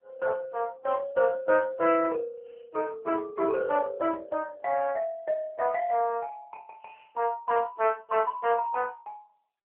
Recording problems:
telephone audio; 280 Hz to 3.1 kHz, AMR-NB

